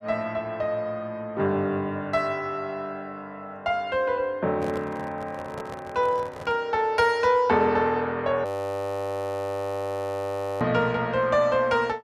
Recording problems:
microphone handling noise; from 4.5 to 6.5 s; peak -8 dB vs average level
frozen audio; at 8.5 s for 2 s

